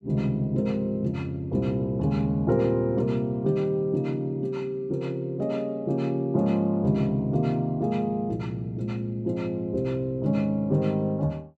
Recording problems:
none

